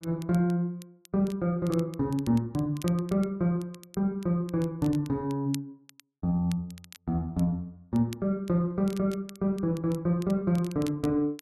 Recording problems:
crackle; vinyl, SNR 22 dB

